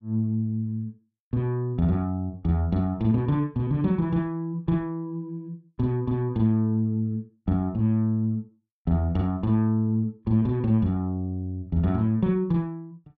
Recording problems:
none

